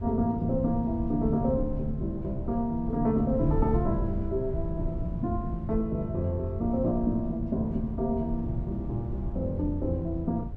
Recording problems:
wind on the microphone; below 130 Hz, SNR 6 dB

